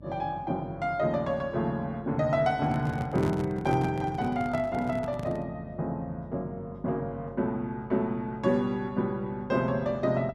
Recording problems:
hum; 50 Hz, harmonics up to 600 Hz, SNR 19 dB
microphone handling noise; from 2.5 to 5.5 s; peak +1 dB vs average level

